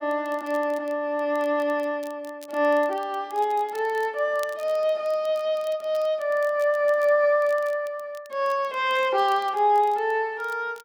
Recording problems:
crackle; vinyl, SNR 27 dB

